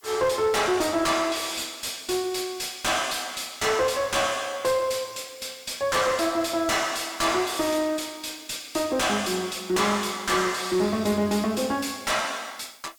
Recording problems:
distortion; soft clipping, signal-to-distortion ratio 6 dB
background hiss; slope +5 dB per octave, SNR 27 dB

